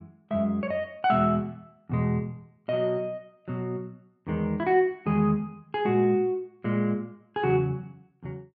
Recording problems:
none

